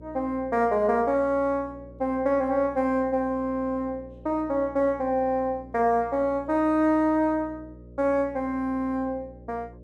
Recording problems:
hum; 60 Hz, harmonics up to 600 Hz, SNR 21 dB

